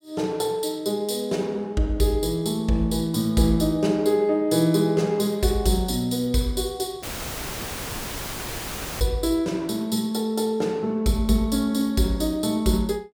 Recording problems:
dropout; at 7 s for 2 s; filled with static

